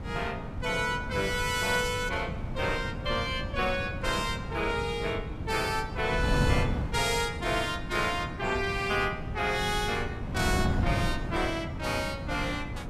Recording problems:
wind noise; below 210 Hz, SNR 5 dB

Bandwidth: 14.5 kHz